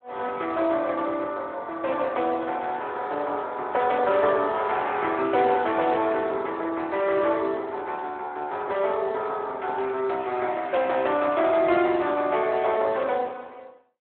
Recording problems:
phone line; 280 Hz to 3.6 kHz, Speex

